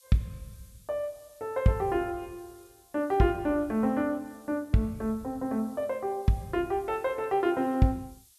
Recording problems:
hiss; slope +5 dB per octave, SNR 28 dB

